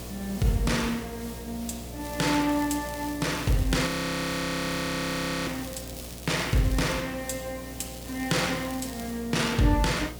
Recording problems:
mains hum; 60 Hz, harmonics up to 720 Hz, SNR 15 dB
hiss; SNR 14 dB
crackle; from 2 to 7 s and from 8 to 9 s; loose cable, SNR 17 dB
audio freezing; at 4 s for 1.5 s

